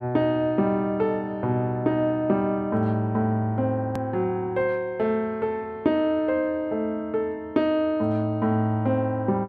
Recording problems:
hard cut with a click; at 4 s

